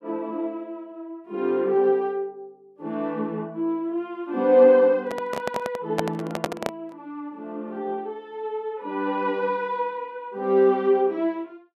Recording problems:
microphone handling noise; from 5 to 7 s; peak +3 dB vs average level

